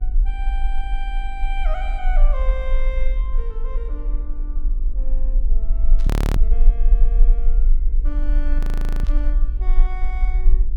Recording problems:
electrical hum; 50 Hz, harmonics up to 950 Hz, SNR 14 dB
rumble; below 38 Hz, strongest tone 22 Hz, SNR -13 dB
static burst; at 6 s and at 9 s; peak -4 dB vs average level
frozen audio; at 6 s and at 8.5 s

